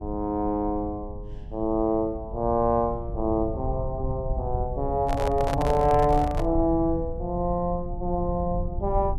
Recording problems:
rumble; below 96 Hz, SNR 8 dB
handling noise; from 5 to 6.5 s; peak -1 dB vs average level

